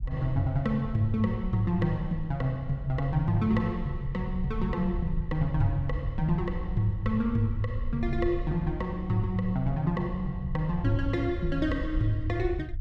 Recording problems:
rumble; below 74 Hz, SNR 8 dB

